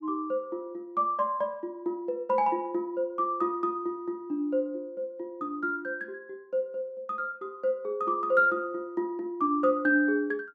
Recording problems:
none

